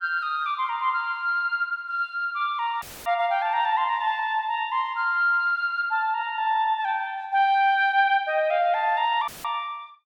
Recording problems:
dropout; at 3 s and at 9.5 s; filled with static

